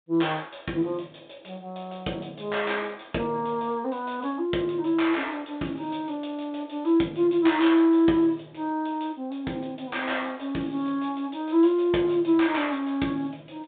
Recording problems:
phone line; 130 Hz to 3.8 kHz, G.726

